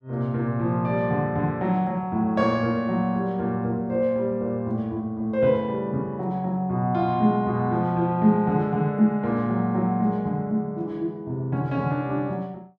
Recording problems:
none

